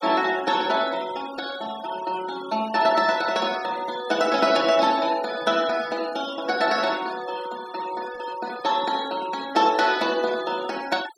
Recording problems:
denoising artefacts; signal-to-artefact ratio 16 dB

